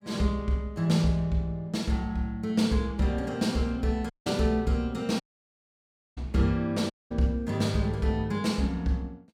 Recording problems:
dropout; at 4 s, at 5 s for 1 s and at 7 s

